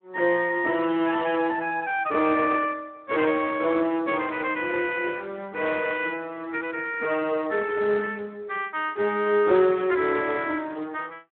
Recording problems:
phone line; 240 Hz to 3.3 kHz, Speex

